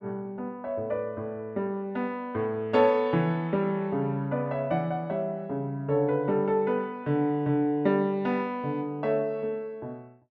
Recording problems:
none

